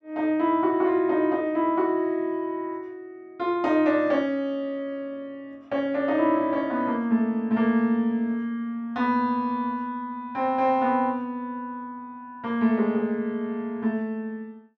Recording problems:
none

